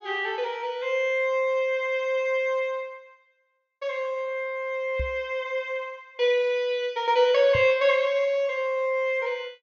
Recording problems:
low-pass filter; nothing above 7.1 kHz
knock on the microphone; at 5 s and at 7.5 s; peak -3 dB vs average level

